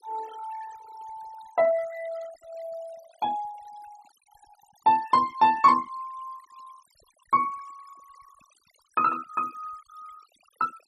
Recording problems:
denoising artefacts; signal-to-artefact ratio 21 dB

